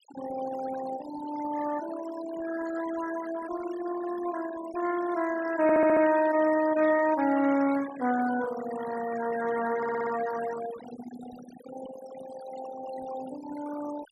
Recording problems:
denoising artefacts; signal-to-artefact ratio 12 dB
audio stuttering; at 5.5 s and at 10 s

